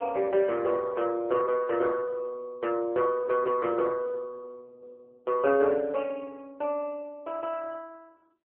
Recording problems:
telephone audio; 300 Hz to 3.1 kHz, AMR-NB

